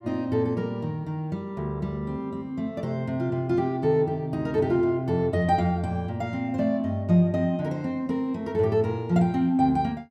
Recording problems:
none

